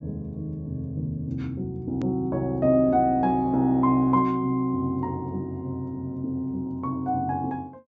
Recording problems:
low-pass filter; nothing above 8 kHz
edit click; at 2 s

